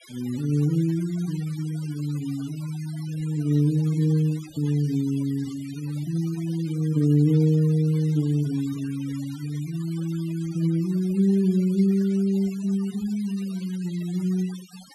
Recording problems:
denoising artefacts; signal-to-artefact ratio 21 dB

